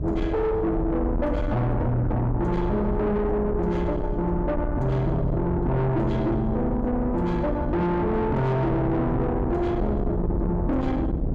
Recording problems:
distorted audio; soft clipping, signal-to-distortion ratio 7 dB
low-frequency rumble; below 190 Hz, SNR 5 dB
wind on the microphone; below 370 Hz, SNR 9 dB

